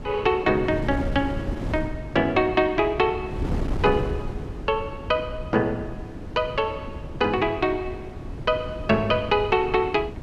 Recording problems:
wind on the microphone; below 280 Hz, SNR 9 dB

